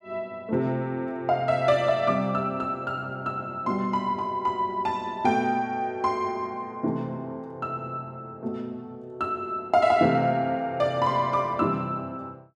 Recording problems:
none

